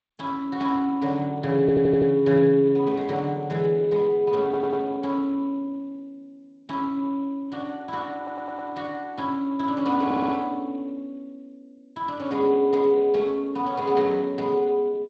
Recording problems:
lossy codec; Speex, then G.722, log-spectral distance 2 dB
audio stuttering; 4 times, first at 1.5 s

